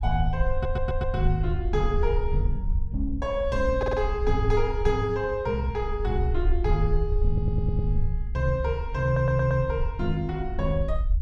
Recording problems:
low-frequency rumble; below 62 Hz, SNR 3 dB
audio stuttering; 4 times, first at 0.5 s

